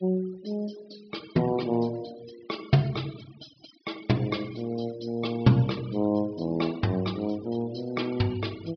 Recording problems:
treble cut off; nothing above 5.5 kHz
noise reduction artefacts; signal-to-artefact ratio 20 dB

